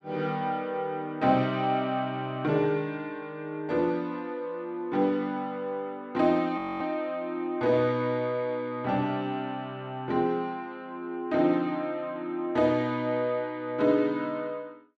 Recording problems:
audio freezing; at 6.5 s

